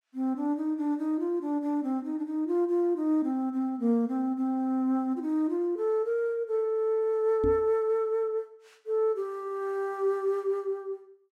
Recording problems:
microphone thump; at 7.5 s; peak -1 dB vs average level

